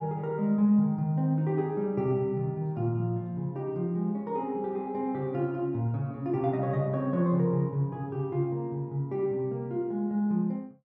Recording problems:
none

